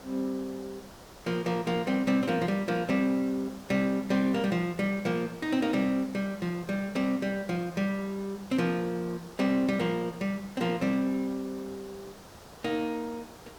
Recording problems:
background hiss; SNR 19 dB

